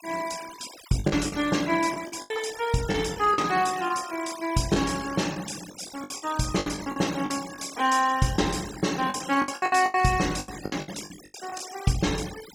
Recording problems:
denoising artefacts; signal-to-artefact ratio 13 dB
packet loss; 12% of the sound replaced, filled with the last packet

